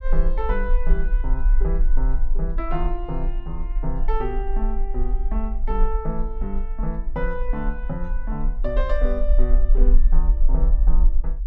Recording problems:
rumble; below 38 Hz, strongest tone 22 Hz, SNR -6 dB

